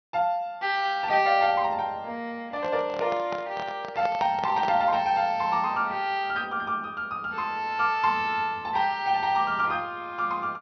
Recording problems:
treble missing; nothing above 6 kHz
handling noise; from 2.5 to 5 s; peak -4 dB vs average level

